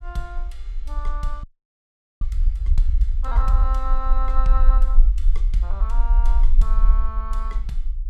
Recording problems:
low-frequency rumble; below 42 Hz, strongest tone 22 Hz, SNR -11 dB
frozen audio; at 1.5 s for 1 s

